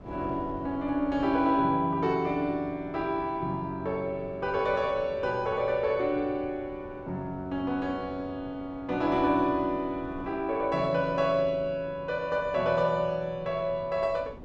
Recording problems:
wind on the microphone; below 440 Hz, SNR 19 dB

